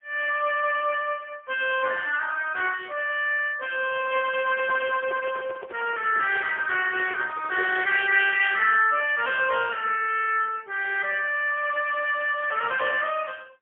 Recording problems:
telephone audio; 320 Hz to 3.3 kHz, AMR-NB, then MP3
handling noise; from 4.5 to 8 s; peak -8 dB vs average level

